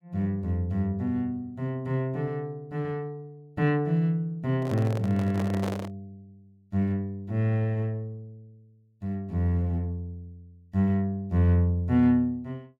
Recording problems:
handling noise; from 4.5 to 6 s; peak -3 dB vs average level

